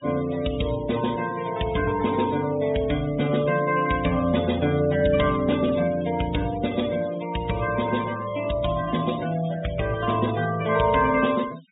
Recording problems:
treble cut off; nothing above 4 kHz
noise reduction artefacts; signal-to-artefact ratio 16 dB

